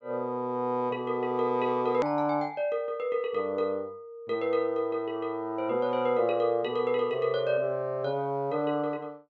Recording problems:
treble missing; nothing above 8 kHz
hard cut with a click; at 2 s

